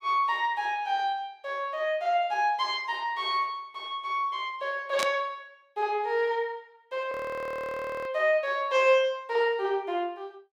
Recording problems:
burst of static; at 5 s; peak +1 dB vs average level
audio freezing; at 7 s for 1 s

